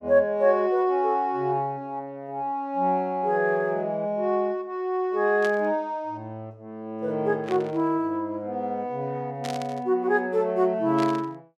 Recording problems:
burst of static; 4 times, first at 5.5 s; peak -7 dB vs average level

